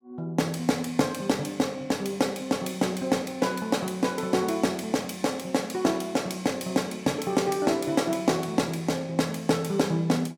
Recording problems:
none

